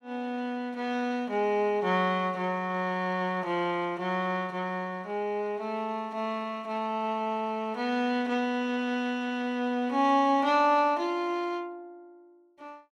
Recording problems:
none

